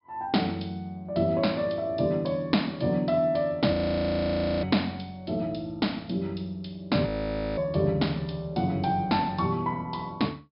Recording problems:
low-pass filter; nothing above 5.5 kHz
audio freezing; at 3.5 s for 1 s and at 7 s for 0.5 s

